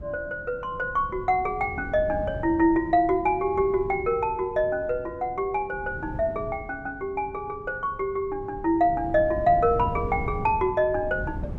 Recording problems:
wind noise; below 200 Hz, SNR 13 dB

